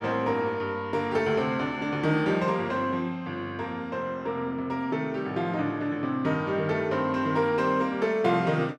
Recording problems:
none

